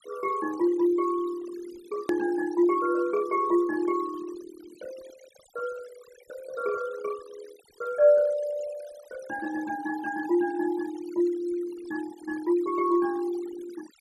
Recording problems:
noise reduction artefacts; signal-to-artefact ratio 19 dB
hard cut with a click; at 2 s

